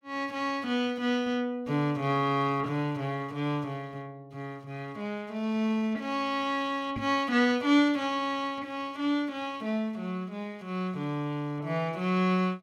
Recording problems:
microphone bump; at 7 s; peak -5 dB vs average level

